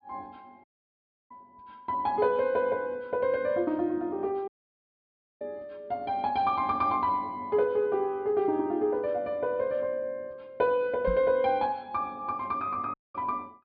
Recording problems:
treble missing; nothing above 5 kHz
audio cutting out; at 0.5 s for 0.5 s, at 4.5 s for 1 s and at 13 s
microphone bump; at 11 s; peak -2 dB vs average level

